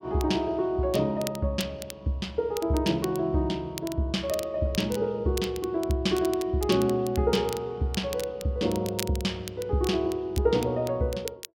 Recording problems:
crackling; vinyl, SNR 15 dB

